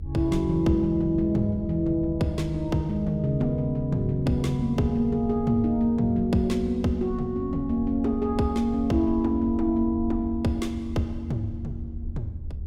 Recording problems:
rumble; below 80 Hz, SNR 12 dB

